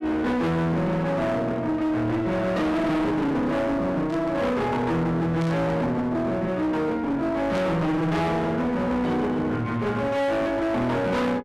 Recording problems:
distortion; hard clipping, uneven, signal-to-distortion ratio 5 dB
burst of static; at 4 s, at 5.5 s and at 7.5 s; peak -12 dB vs average level

